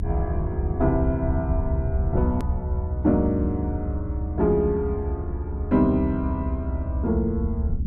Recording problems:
low-frequency rumble; below 82 Hz, SNR 2 dB
click at an edit; at 2.5 s

